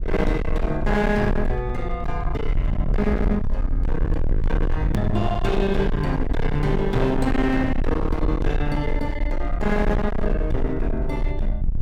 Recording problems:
distortion; hard clipping, signal-to-distortion ratio 6 dB
rumble; below 74 Hz, SNR 2 dB
edit click; at 5 s

